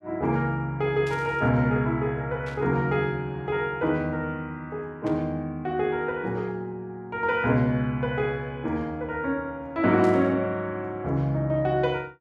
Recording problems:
burst of static; 4 times, first at 1 s; peak -13 dB vs average level

